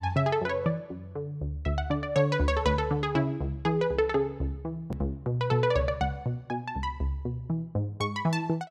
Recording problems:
click at an edit; at 5 s

